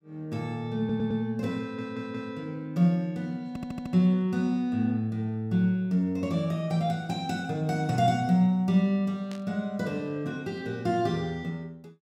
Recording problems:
audio stuttering; at 1 s, at 1.5 s and at 3.5 s
static burst; at 9.5 s; peak -13 dB vs average level

